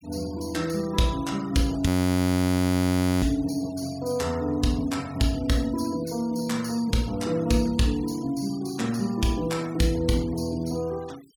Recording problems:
denoising artefacts; signal-to-artefact ratio 21 dB
audio freezing; at 2 s for 1.5 s

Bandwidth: 18 kHz